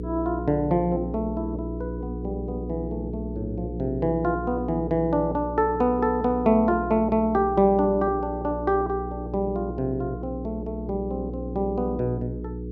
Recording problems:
hum; 60 Hz, harmonics up to 480 Hz, SNR 8 dB

